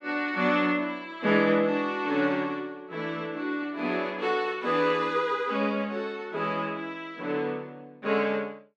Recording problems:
none

